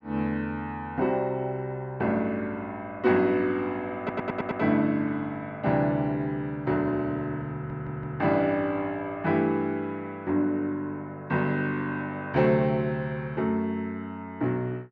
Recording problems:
stutter; at 4 s and at 7.5 s

